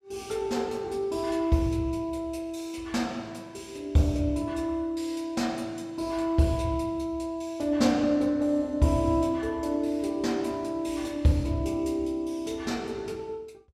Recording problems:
none

